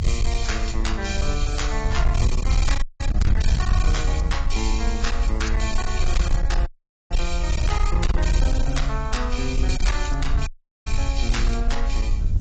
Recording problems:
codec artefacts; AAC, log-spectral distance 3 dB, nothing above 7.6 kHz
distorted audio; hard clipping, signal-to-distortion ratio 11 dB
background hiss; slope +1 dB per octave, SNR 27 dB
rumble; below 56 Hz, SNR 0 dB
wind on the microphone; below 76 Hz, SNR -2 dB
audio cutting out; at 3 s, at 6.5 s and at 10 s

